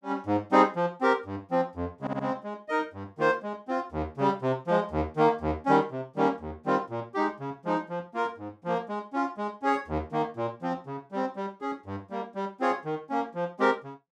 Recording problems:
stutter; at 2 s

